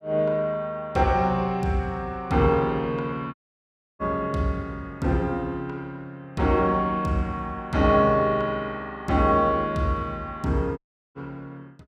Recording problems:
dropout; at 3.5 s for 0.5 s and at 11 s

